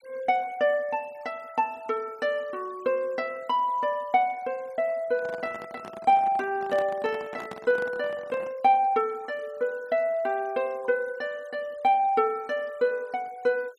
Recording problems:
noise reduction artefacts; signal-to-artefact ratio 27 dB
microphone handling noise; from 5 to 8.5 s; peak -8 dB vs average level

